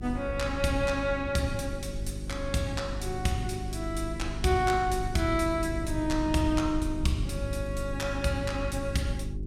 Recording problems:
hum; 50 Hz, harmonics up to 400 Hz, SNR 7 dB
rumble; below 84 Hz, SNR 10 dB

